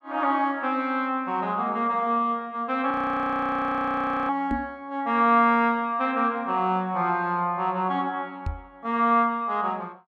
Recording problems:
audio freezing; at 3 s for 1.5 s
knock on the microphone; at 4.5 s and at 8.5 s; peak -1 dB vs average level

